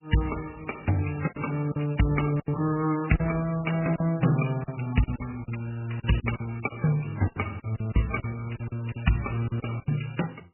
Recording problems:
lossy codec; AAC, then MP3, log-spectral distance 6 dB, nothing above 2.8 kHz
packet loss; 11% of the sound replaced, filled with silence

